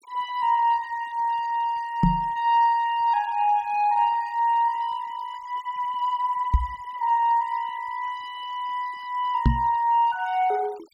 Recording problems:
denoising artefacts; signal-to-artefact ratio 25 dB
knock on the microphone; at 2 s, at 6.5 s and at 9.5 s; peak +7 dB vs average level

